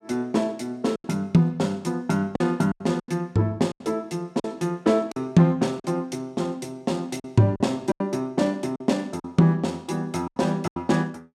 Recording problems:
packet loss; 8% of the sound replaced, filled with silence

